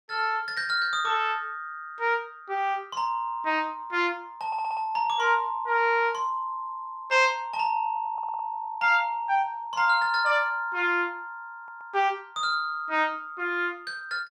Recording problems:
audio stuttering; at 4.5 s, at 8 s and at 12 s

